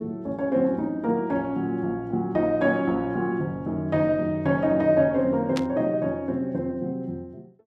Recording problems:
static burst; at 5.5 s; peak -4 dB vs average level

